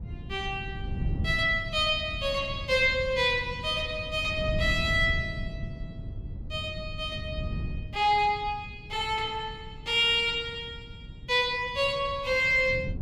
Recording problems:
wind on the microphone; below 150 Hz, SNR 11 dB

